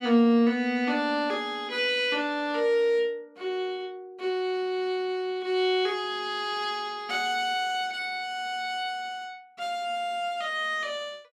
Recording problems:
none

